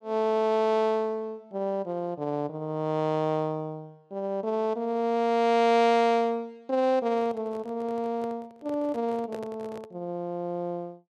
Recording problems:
handling noise; from 7 to 10 s; peak -7 dB vs average level

